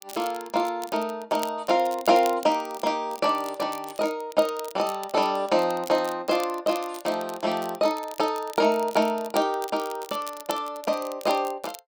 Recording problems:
crackle; vinyl, SNR 17 dB

